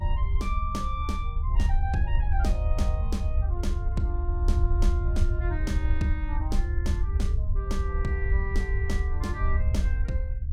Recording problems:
rumble; below 72 Hz, SNR -7 dB

